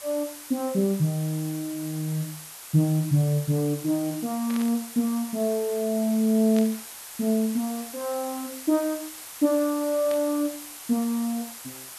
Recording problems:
hiss; SNR 12 dB
burst of static; at 4.5 s, at 6.5 s and at 10 s; peak -9 dB vs average level

